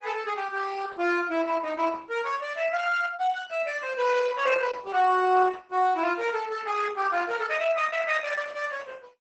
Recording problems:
lossy codec; Opus, log-spectral distance 5 dB, nothing above 8 kHz

